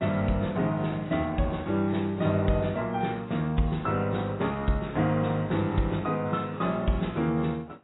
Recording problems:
lossy codec; AAC, log-spectral distance 3 dB, nothing above 3.8 kHz

